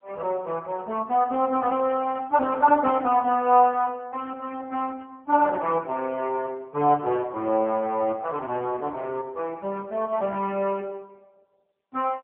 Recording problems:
phone line; 280 Hz to 3.2 kHz, AMR-NB

